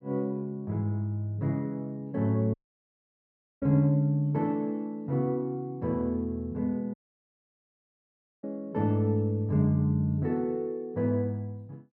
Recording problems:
audio cutting out; at 2.5 s for 1 s and at 7 s for 1.5 s

